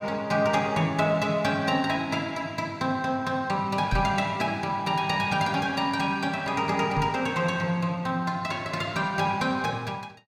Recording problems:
microphone bump; at 4 s and at 7 s; peak +2 dB vs average level

